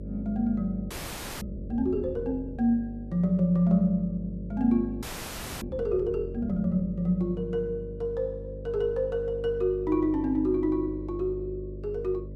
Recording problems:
electrical hum; 50 Hz, harmonics up to 600 Hz, SNR 12 dB
audio freezing; at 1 s for 0.5 s and at 5 s for 0.5 s

